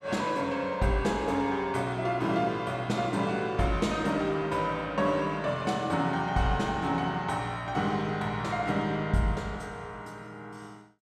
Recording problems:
none

